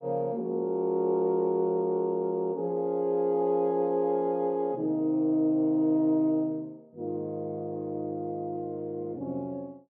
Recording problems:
none

